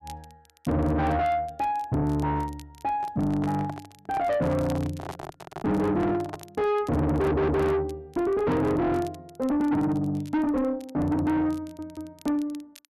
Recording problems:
distorted audio; soft clipping, signal-to-distortion ratio 7 dB
crackling; vinyl, SNR 27 dB
microphone handling noise; from 3 to 6.5 s; peak -5 dB vs average level
audio stuttering; at 7 s and at 12 s

